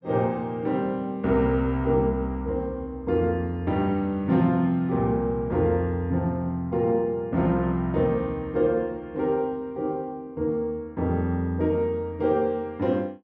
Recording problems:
none

